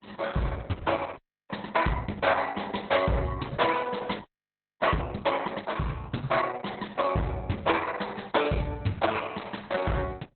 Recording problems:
lossy compression; Opus, log-spectral distance 5 dB, nothing above 4 kHz
distortion; hard clipping, uneven, signal-to-distortion ratio 10 dB
audio freezing; at 1 s and at 4.5 s for 0.5 s

